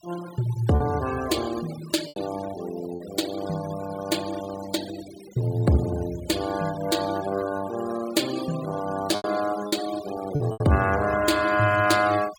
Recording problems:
denoising artefacts; signal-to-artefact ratio 14 dB
lost packets; 3% of the sound replaced, filled with repeated pitch periods

